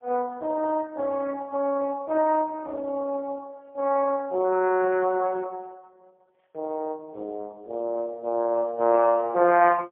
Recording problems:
phone line; 300 Hz to 2.6 kHz, AMR-NB, then MP3

